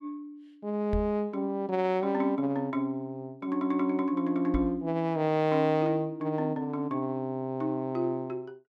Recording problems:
microphone thump; at 1 s and at 4.5 s; peak 0 dB vs average level

